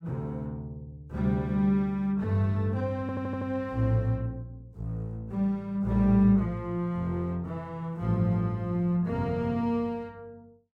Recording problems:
stutter; at 3 s

